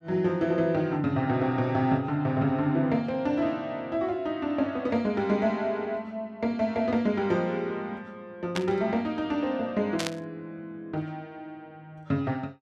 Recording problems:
burst of static; at 8.5 s and at 10 s; peak +1 dB vs average level

